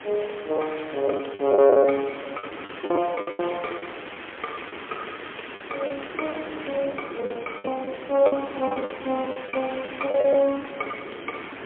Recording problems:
phone line; 220 Hz to 3.3 kHz, AMR-NB, then MP3
hiss; SNR 14 dB
wind noise; below 590 Hz, SNR 15 dB
packet loss; 12% of the sound replaced, filled with the last packet

